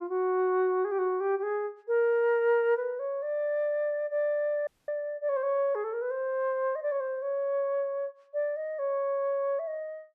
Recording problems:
dropout; at 4.5 s

